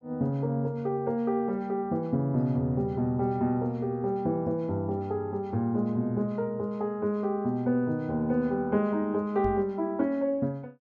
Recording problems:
knock on the microphone; at 9.5 s; peak -2 dB vs average level

